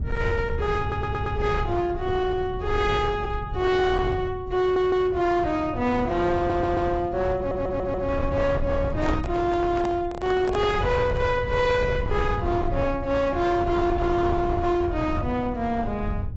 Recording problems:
lossy codec; AAC, log-spectral distance 2 dB, nothing above 7.6 kHz
distorted audio; hard clipping, signal-to-distortion ratio 11 dB
low-frequency rumble; below 130 Hz, SNR 8 dB
stutter; 4 times, first at 1 s
microphone handling noise; from 9 to 11 s; peak -3 dB vs average level

